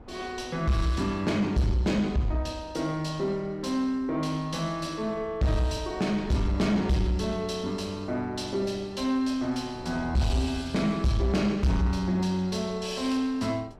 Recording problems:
distorted audio; soft clipping, signal-to-distortion ratio 11 dB
wind on the microphone; below 450 Hz, SNR 20 dB

